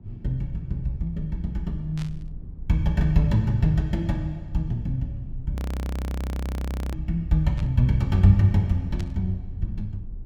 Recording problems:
rumble; below 80 Hz, SNR 15 dB
burst of static; at 2 s, at 7.5 s and at 9 s; peak -13 dB vs average level
audio freezing; at 5.5 s for 1.5 s

